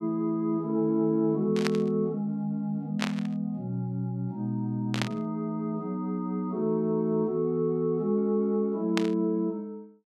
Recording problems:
burst of static; 4 times, first at 1.5 s; peak +3 dB vs average level

